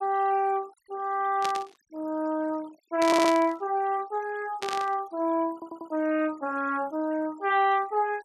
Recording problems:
noise reduction artefacts; signal-to-artefact ratio 23 dB
static burst; at 1.5 s, at 3 s and at 4.5 s; peak -1 dB vs average level
audio stuttering; at 3 s and at 5.5 s

